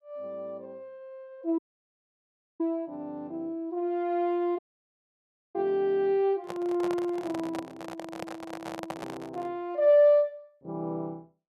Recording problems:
audio cutting out; at 1.5 s for 1 s and at 4.5 s for 1 s
microphone handling noise; from 6.5 to 9.5 s; peak -4 dB vs average level

